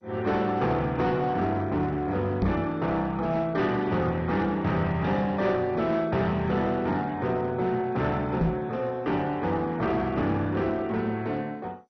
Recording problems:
lossy compression; MP2, log-spectral distance 2 dB, nothing above 6 kHz
distorted audio; hard clipping, uneven, signal-to-distortion ratio 11 dB
knock on the microphone; at 2.5 s and at 8.5 s; peak +5 dB vs average level

